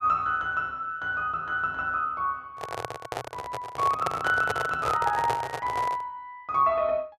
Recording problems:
microphone handling noise; from 2.5 to 6 s; peak +2 dB vs average level

